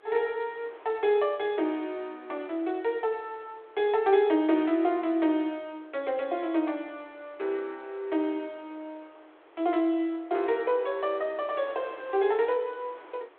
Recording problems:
telephone audio; 280 Hz to 3.6 kHz, G.726
wind noise; below 1.5 kHz, SNR 25 dB

